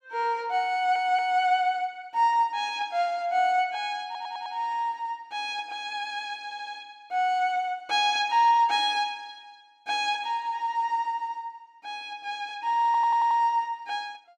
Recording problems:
stutter; 4 times, first at 0.5 s

